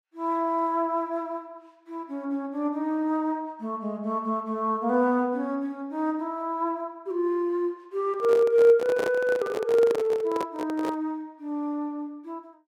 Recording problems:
handling noise; from 8 to 11 s; peak -1 dB vs average level

